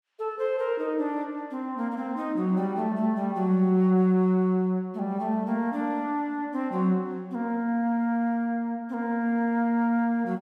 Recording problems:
none

